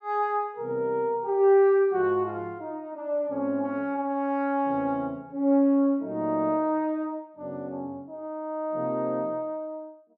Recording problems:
none

